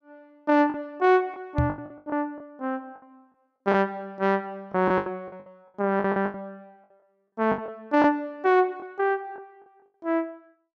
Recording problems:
lost packets; 11% of the sound replaced, filled with the last packet
microphone thump; at 1.5 s; peak +4 dB vs average level

